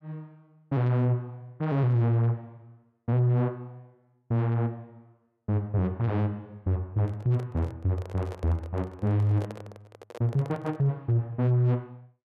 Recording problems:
distorted audio; soft clipping, signal-to-distortion ratio 11 dB
microphone handling noise; from 7 to 11 s; peak -8 dB vs average level

